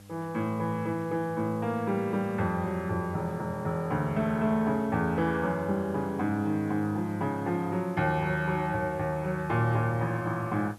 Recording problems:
hum; 50 Hz, harmonics up to 800 Hz, SNR 23 dB
hiss; slope -1 dB per octave, SNR 28 dB

